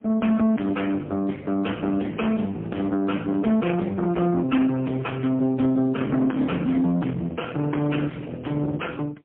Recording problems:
phone line; 150 Hz to 2.6 kHz, AMR-NB, then MP3
distortion; soft clipping, signal-to-distortion ratio 10 dB

